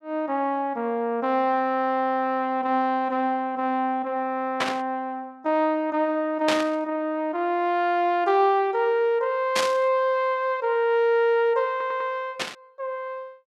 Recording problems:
static burst; 4 times, first at 4.5 s; peak +3 dB vs average level
audio stuttering; at 12 s

